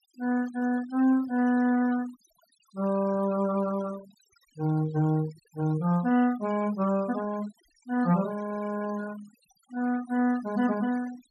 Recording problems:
denoising artefacts; signal-to-artefact ratio 20 dB

